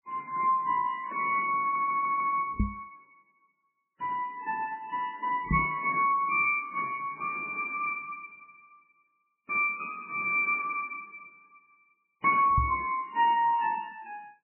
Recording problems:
codec artefacts; MP3, then MP3, log-spectral distance 4 dB, nothing above 2.4 kHz
audio stuttering; at 1.5 s
microphone bump; at 2.5 s, at 5.5 s and at 13 s; peak +3 dB vs average level

